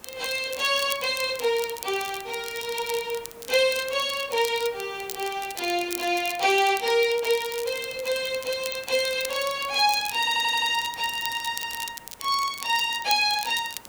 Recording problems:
background hiss; slope -5 dB per octave, SNR 24 dB
crackle; vinyl, SNR 12 dB
stutter; at 10 s

